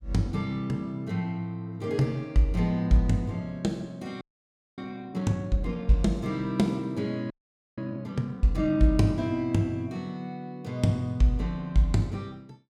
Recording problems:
audio freezing; at 4 s for 0.5 s and at 7.5 s

